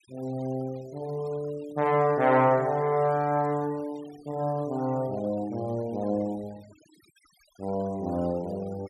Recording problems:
noise reduction artefacts; signal-to-artefact ratio 24 dB

